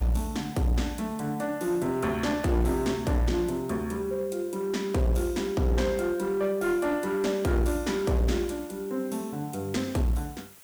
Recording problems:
distorted audio; hard clipping, uneven, signal-to-distortion ratio 9 dB
hiss; slope 0 dB per octave, SNR 22 dB

